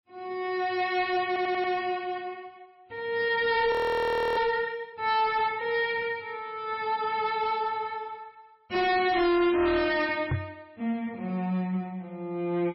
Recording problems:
codec artefacts; MP3, log-spectral distance 2 dB, nothing above 18.3 kHz
distorted audio; hard clipping, uneven, signal-to-distortion ratio 7 dB
stutter; at 1.5 s
audio freezing; at 3.5 s for 0.5 s
microphone thump; at 10 s; peak +2 dB vs average level

